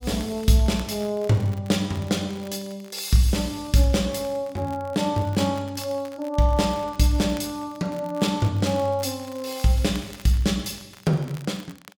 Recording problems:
crackle; vinyl, SNR 23 dB

